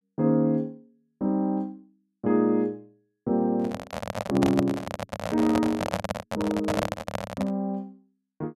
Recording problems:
microphone handling noise; from 3.5 to 7.5 s; peak +4 dB vs average level

